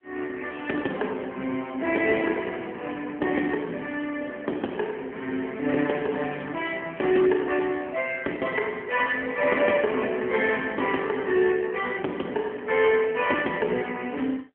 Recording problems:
phone line; 220 Hz to 3.3 kHz, AMR-NB

